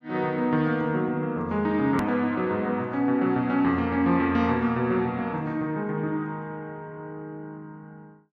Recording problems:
edit click; at 2 s

